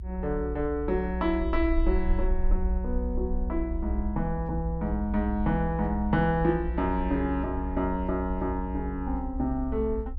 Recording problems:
low-frequency rumble; below 60 Hz, SNR 4 dB

